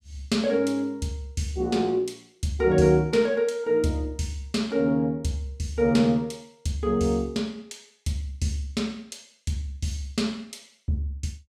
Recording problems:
none

